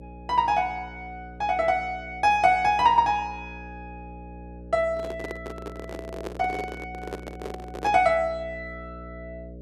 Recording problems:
hum; 60 Hz, harmonics up to 600 Hz, SNR 18 dB
handling noise; from 5 to 8 s; peak -6 dB vs average level

